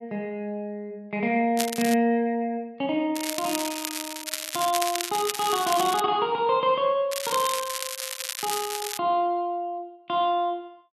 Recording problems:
crackle; 4 times, first at 1.5 s; loose cable, SNR 5 dB

